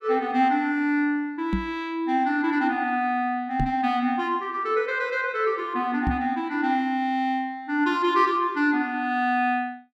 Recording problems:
microphone thump; at 1.5 s, at 3.5 s and at 6 s; peak +2 dB vs average level

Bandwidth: 14 kHz